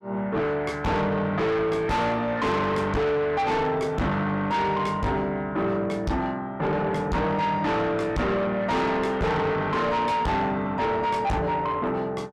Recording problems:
distortion; soft clipping, signal-to-distortion ratio 6 dB

